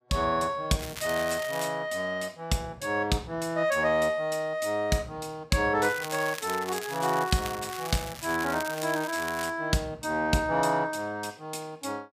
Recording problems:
crackling; at 1 s and from 6 to 9.5 s; loose cable, SNR 11 dB

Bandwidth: 15 kHz